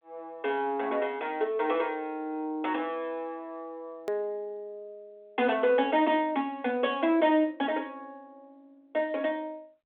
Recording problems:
phone line; 240 Hz to 3.6 kHz, G.726
click at an edit; at 4 s

